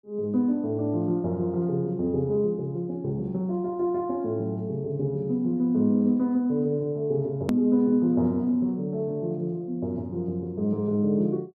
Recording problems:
edit click; at 7.5 s

